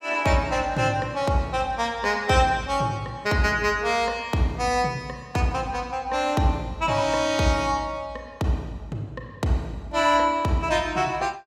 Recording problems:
none

